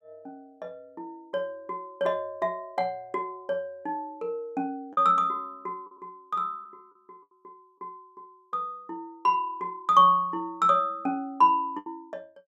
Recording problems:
packet loss; 1.6% of the sound replaced, filled with the last packet

